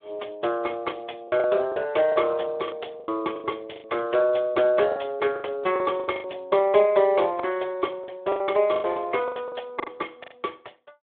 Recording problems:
phone line; 320 Hz to 3.4 kHz, Speex
packet loss; 12% of the sound replaced, filled with the last packet

